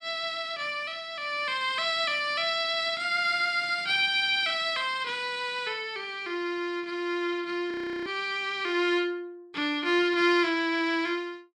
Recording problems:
audio freezing; at 7.5 s

